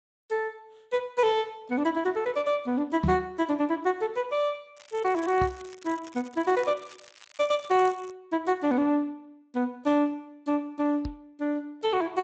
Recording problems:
codec artefacts; Speex, log-spectral distance 4 dB, nothing above 7.3 kHz
knock on the microphone; at 3 s, at 5.5 s and at 11 s; peak +4 dB vs average level
crackling; from 5 to 8 s; loose cable, SNR 22 dB

